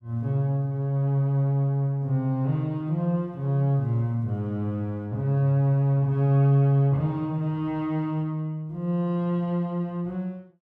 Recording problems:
none

